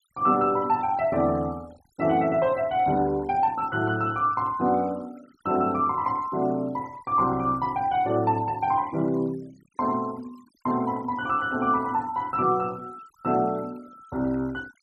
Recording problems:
noise reduction artefacts; signal-to-artefact ratio 24 dB

